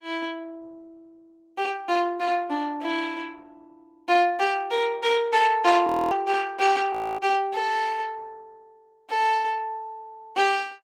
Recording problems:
codec artefacts; Opus, log-spectral distance 3 dB, nothing above 20.1 kHz
frozen audio; at 6 s and at 7 s

